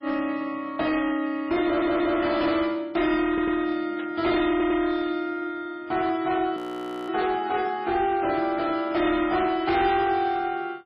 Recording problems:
lossy codec; MP3, log-spectral distance 2 dB, nothing above 13.1 kHz
distortion; hard clipping, uneven, signal-to-distortion ratio 11 dB
stutter; at 1.5 s, at 3.5 s and at 4.5 s
burst of static; at 4 s and at 7 s; peak -13 dB vs average level
frozen audio; at 6.5 s for 0.5 s

